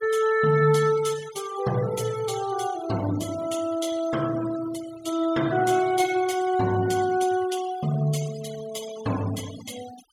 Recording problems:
noise reduction artefacts; signal-to-artefact ratio 16 dB

